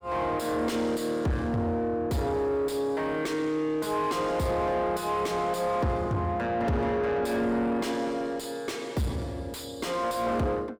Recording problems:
distortion; soft clipping, signal-to-distortion ratio 8 dB

